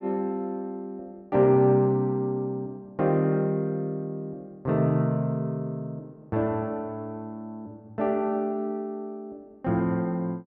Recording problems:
none

